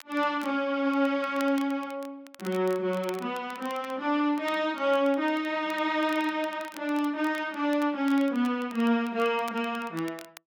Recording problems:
crackling; vinyl, SNR 22 dB

